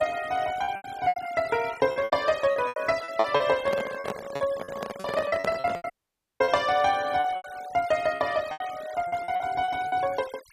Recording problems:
denoising artefacts; signal-to-artefact ratio 18 dB
lost packets; 15% of the sound replaced, filled with repeated pitch periods
handling noise; from 3.5 to 6 s; peak -1 dB vs average level
audio cutting out; at 6 s for 0.5 s

